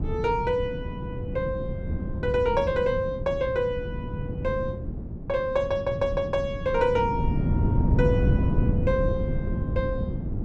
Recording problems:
wind on the microphone; below 190 Hz, SNR 2 dB

